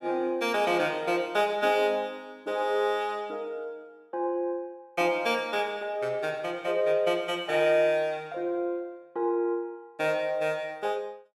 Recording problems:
none

